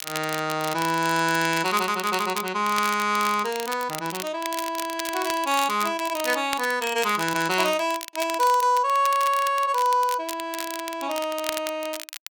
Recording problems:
crackle; vinyl, SNR 11 dB

